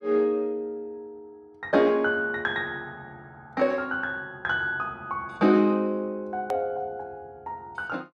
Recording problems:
edit click; at 6.5 s

